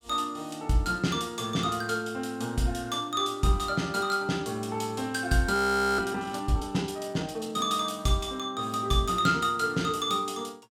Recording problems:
audio freezing; at 5.5 s

